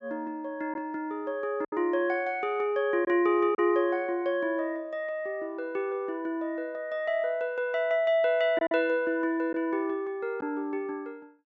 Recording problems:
treble cut off; nothing above 8 kHz
lost packets; 1.9% of the sound replaced, filled with silence

